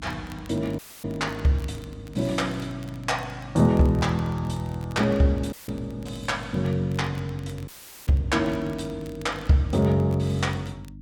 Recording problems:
hum; 50 Hz, harmonics up to 300 Hz, SNR 17 dB
crackle; vinyl, SNR 27 dB
audio cutting out; at 1 s, at 5.5 s and at 7.5 s

